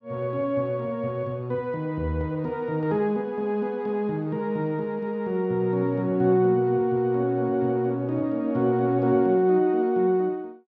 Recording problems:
none

